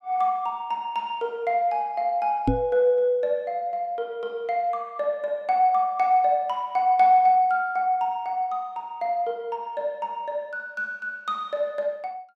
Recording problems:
microphone thump; at 2.5 s; peak +5 dB vs average level

